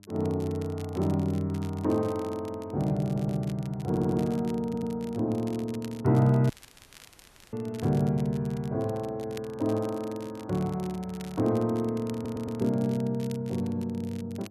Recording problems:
mains hum; 50 Hz, harmonics up to 700 Hz, SNR 25 dB
crackling; vinyl, SNR 22 dB
stutter; 4 times, first at 3 s
dropout; at 6.5 s for 1 s

